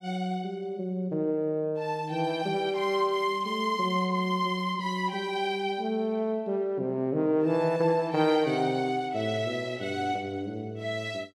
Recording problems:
none

